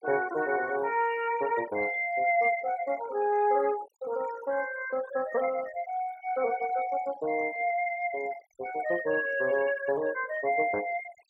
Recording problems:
noise reduction artefacts; signal-to-artefact ratio 18 dB

